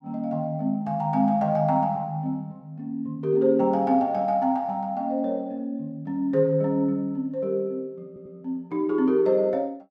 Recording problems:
stutter; at 8 s

